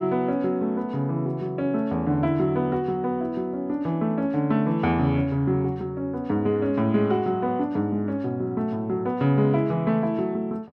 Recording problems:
none

